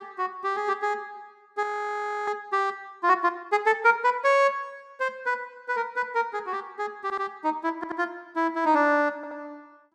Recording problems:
frozen audio; at 1.5 s for 0.5 s
audio stuttering; at 7 s, at 8 s and at 9 s

